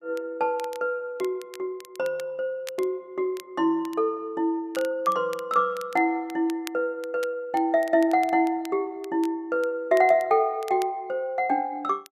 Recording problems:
crackling; vinyl, SNR 22 dB

